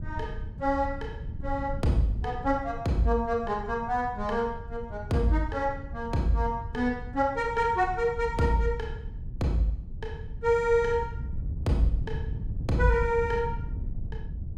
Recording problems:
wind noise; below 110 Hz, SNR 9 dB

